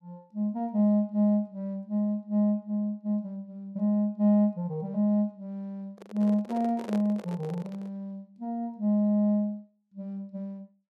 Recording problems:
handling noise; from 6 to 8 s; peak -6 dB vs average level

